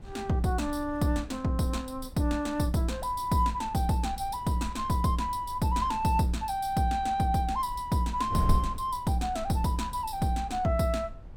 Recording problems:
wind noise; below 82 Hz, SNR 14 dB

